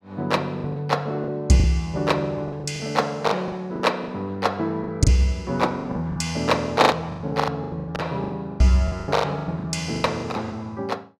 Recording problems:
packet loss; 16% of the sound replaced, filled with the last packet

